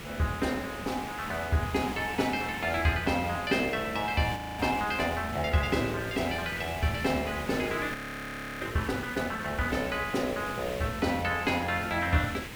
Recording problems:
hiss; SNR 10 dB
frozen audio; at 4.5 s and at 8 s for 0.5 s

